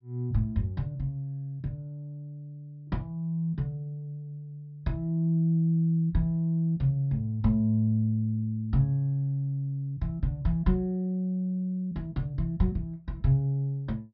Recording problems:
low-pass filter; nothing above 5.5 kHz

